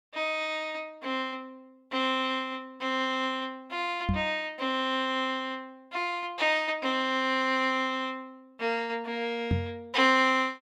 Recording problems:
microphone thump; at 4 s and at 9.5 s; peak +4 dB vs average level

